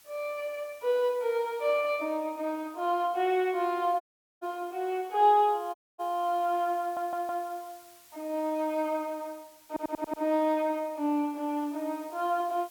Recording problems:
hiss; slope +1 dB per octave, SNR 25 dB
dropout; at 4 s and at 6 s
stutter; at 7 s and at 9.5 s

